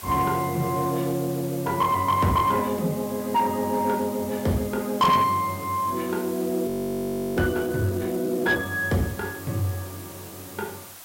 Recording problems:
distorted audio; soft clipping, signal-to-distortion ratio 11 dB
background hiss; slope -1 dB per octave, SNR 15 dB
frozen audio; at 6.5 s for 0.5 s

